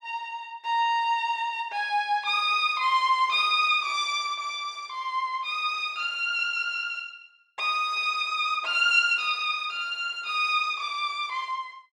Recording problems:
none

